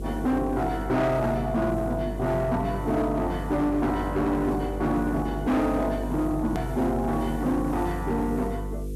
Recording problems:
distortion; hard clipping, signal-to-distortion ratio 11 dB
hum; 50 Hz, harmonics up to 500 Hz, SNR 8 dB
hiss; slope +5 dB per octave, SNR 27 dB
click at an edit; at 6.5 s

